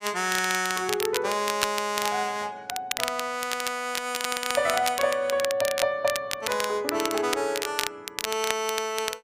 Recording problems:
crackling; vinyl, SNR 5 dB

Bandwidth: 15 kHz